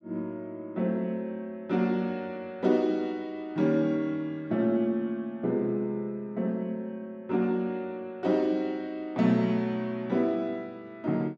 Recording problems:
none

